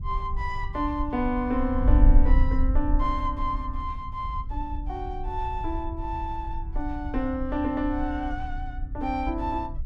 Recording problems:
wind noise; below 58 Hz, SNR 0 dB

